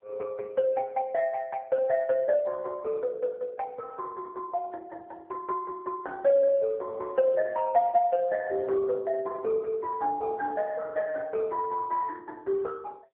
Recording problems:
phone line; 340 Hz to 2 kHz, AMR-NB

